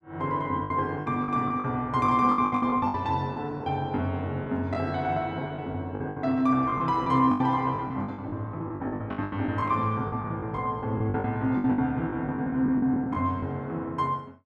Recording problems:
lost packets; 14% of the sound replaced, filled with the last packet

